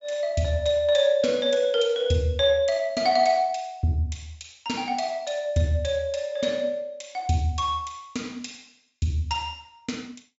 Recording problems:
treble cut off; nothing above 8 kHz

